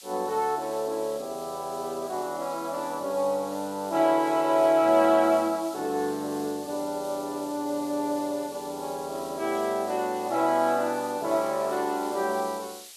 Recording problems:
hiss; slope +4 dB per octave, SNR 17 dB

